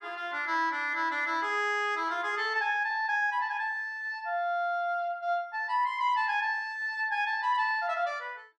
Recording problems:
none

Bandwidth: 12 kHz